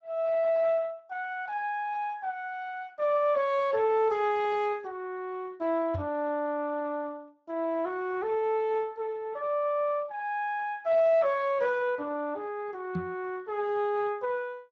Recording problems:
codec artefacts; Speex, log-spectral distance 2 dB
microphone thump; at 6 s and at 13 s; peak 0 dB vs average level

